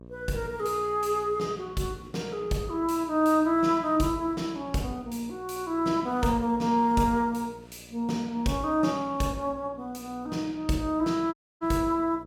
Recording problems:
hum; 60 Hz, harmonics up to 1.2 kHz, SNR 23 dB
audio cutting out; at 11 s

